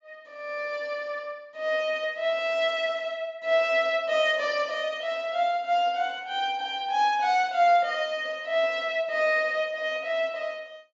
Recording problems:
treble missing; nothing above 8 kHz

